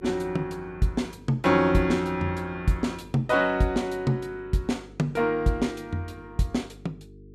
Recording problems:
electrical hum; 50 Hz, harmonics up to 450 Hz, SNR 22 dB

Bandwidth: 14.5 kHz